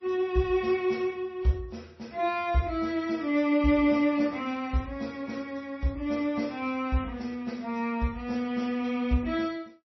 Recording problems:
lossy compression; AAC, then MP3, log-spectral distance 2 dB, nothing above 5.8 kHz

